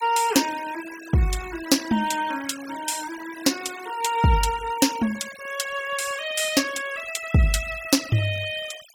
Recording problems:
noise reduction artefacts; signal-to-artefact ratio 15 dB

